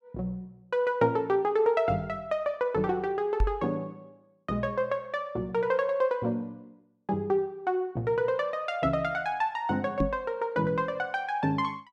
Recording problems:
microphone thump; at 3.5 s and at 10 s; peak +5 dB vs average level

